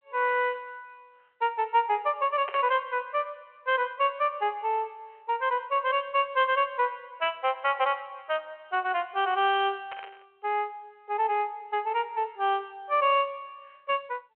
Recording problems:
telephone audio; 340 Hz to 3.3 kHz, G.726
static burst; at 2.5 s and at 10 s; peak -7 dB vs average level

